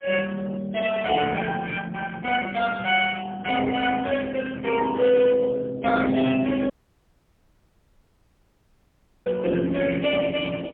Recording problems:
phone line; 220 Hz to 3.3 kHz, AMR-NB, then MP3
dropout; at 6.5 s for 2.5 s

